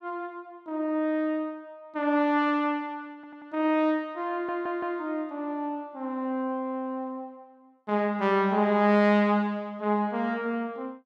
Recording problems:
audio stuttering; at 3 s and at 4.5 s

